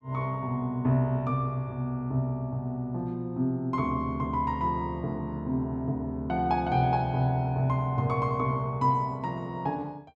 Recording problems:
none

